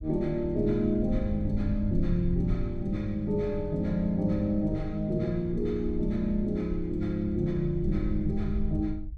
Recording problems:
rumble; below 70 Hz, SNR 9 dB

